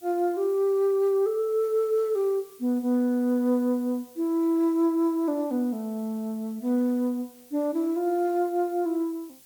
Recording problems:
hiss; SNR 25 dB

